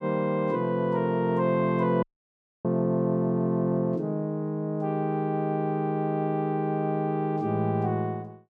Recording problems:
dropout; at 2 s for 0.5 s

